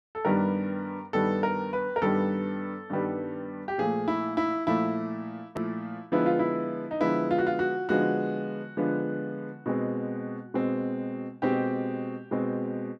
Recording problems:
hard cut with a click; at 5.5 s

